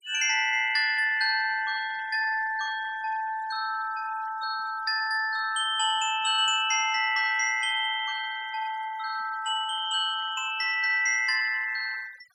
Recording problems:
noise reduction artefacts; signal-to-artefact ratio 20 dB

